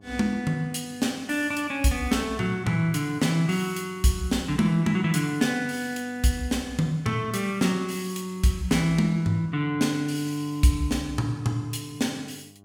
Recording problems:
electrical hum; 50 Hz, harmonics up to 1.2 kHz, SNR 28 dB

